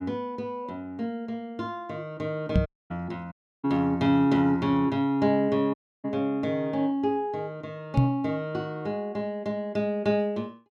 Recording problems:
microphone bump; at 2.5 s and at 8 s; peak +9 dB vs average level
dropout; at 2.5 s, at 3.5 s and at 5.5 s

